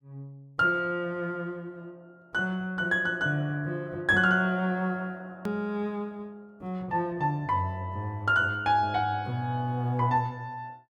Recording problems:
hard cut with a click; at 5.5 s

